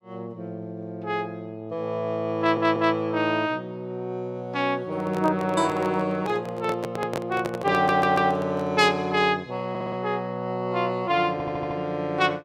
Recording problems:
stutter; 4 times, first at 2.5 s
microphone handling noise; from 5 to 8.5 s; peak 0 dB vs average level

